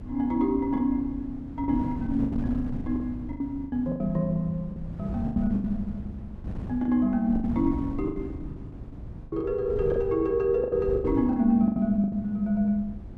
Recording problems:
hum; 60 Hz, harmonics up to 360 Hz, SNR 22 dB
wind on the microphone; below 190 Hz, SNR 11 dB
lost packets; 13% of the sound replaced, filled with the last packet

